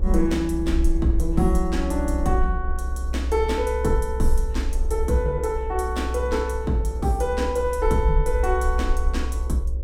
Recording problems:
mains hum; 50 Hz, harmonics up to 550 Hz, SNR 20 dB
low-frequency rumble; below 64 Hz, SNR 3 dB
wind noise; below 500 Hz, SNR 22 dB

